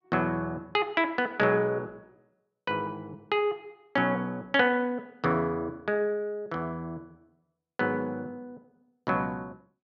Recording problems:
none

